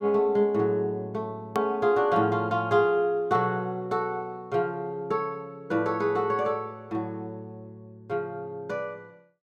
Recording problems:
edit click; at 1.5 s

